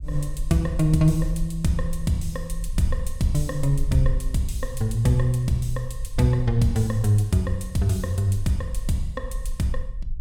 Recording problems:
rumble; below 46 Hz, strongest tone 24 Hz, SNR 10 dB

